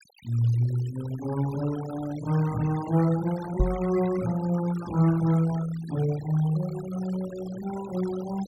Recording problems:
noise reduction artefacts; signal-to-artefact ratio 17 dB
microphone thump; at 3.5 s; peak +6 dB vs average level

